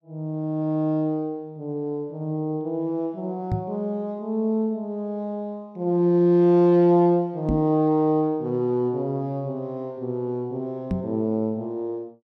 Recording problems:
microphone bump; at 3.5 s, at 7.5 s and at 11 s; peak +2 dB vs average level

